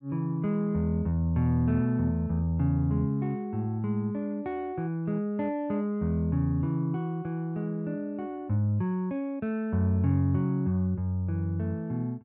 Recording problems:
none

